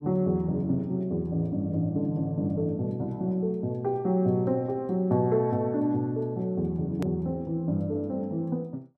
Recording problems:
click at an edit; at 7 s

